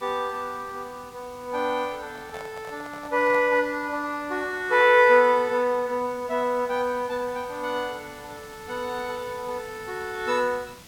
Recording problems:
hiss; slope -2 dB per octave, SNR 23 dB
microphone handling noise; from 2 to 3.5 s; peak -11 dB vs average level

